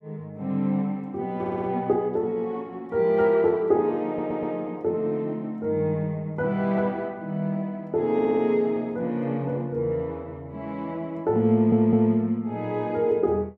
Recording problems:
audio stuttering; 4 times, first at 1.5 s

